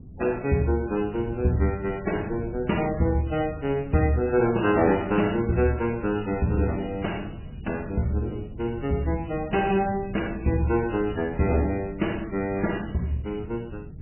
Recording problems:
codec artefacts; MP3, log-spectral distance 5 dB, nothing above 2.9 kHz
wind on the microphone; below 180 Hz, SNR 14 dB

